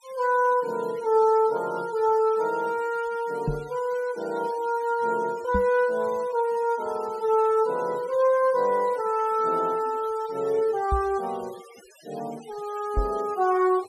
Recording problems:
denoising artefacts; signal-to-artefact ratio 23 dB
microphone thump; 4 times, first at 3.5 s; peak +1 dB vs average level

